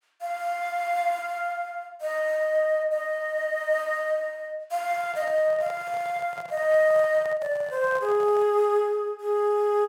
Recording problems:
microphone handling noise; from 5 to 8.5 s; peak -11 dB vs average level

